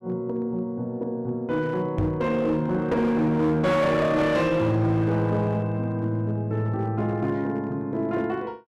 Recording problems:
distortion; hard clipping, uneven, signal-to-distortion ratio 10 dB
microphone thump; at 2 s; peak +1 dB vs average level

